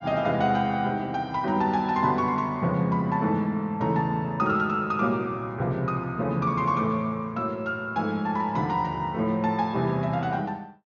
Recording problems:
low-pass filter; nothing above 6.6 kHz

